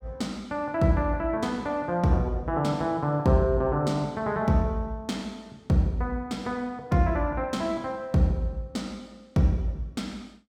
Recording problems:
none

